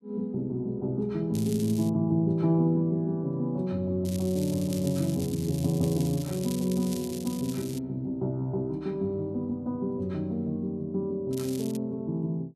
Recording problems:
crackle; at 1.5 s, from 4 to 8 s and at 11 s; loose cable, SNR 14 dB

